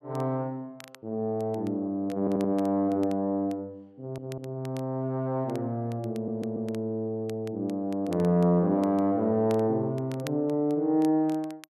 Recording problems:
crackle; vinyl, SNR 25 dB
audio stuttering; at 2 s, at 4 s and at 6 s

